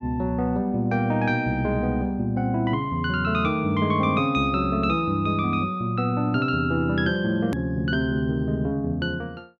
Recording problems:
click at an edit; at 7.5 s

